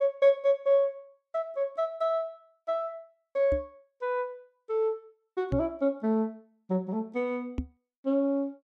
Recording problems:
microphone bump; at 3.5 s, at 5.5 s and at 7.5 s; peak +1 dB vs average level

